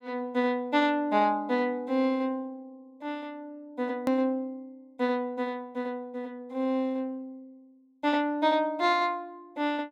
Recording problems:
edit click; at 4 s

